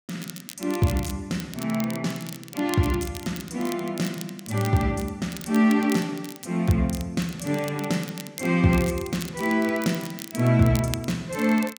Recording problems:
crackle; vinyl, SNR 15 dB

